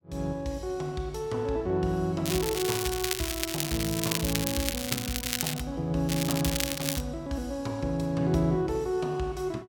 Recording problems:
crackle; from 2.5 to 5.5 s and at 6 s; loose cable, SNR 1 dB

